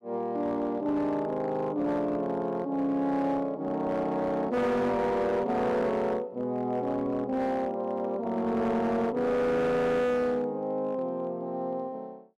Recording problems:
distortion; hard clipping, signal-to-distortion ratio 10 dB

